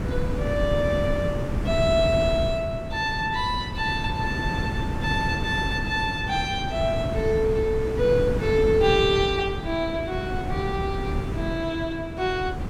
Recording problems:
wind noise; below 270 Hz, SNR 4 dB

